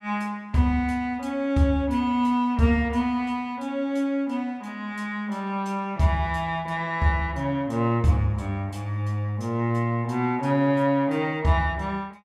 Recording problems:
none

